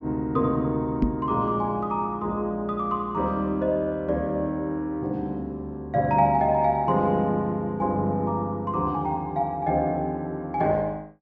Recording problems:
low-pass filter; nothing above 7.6 kHz
microphone thump; at 1 s; peak +6 dB vs average level

